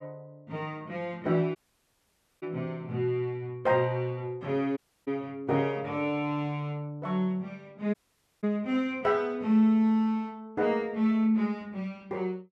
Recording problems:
audio cutting out; at 1.5 s for 1 s, at 5 s and at 8 s

